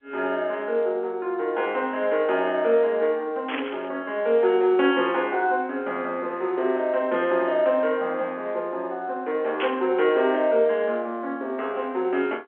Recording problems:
phone line; 220 Hz to 3.3 kHz, G.711
burst of static; at 3.5 s and at 9.5 s; peak -2 dB vs average level

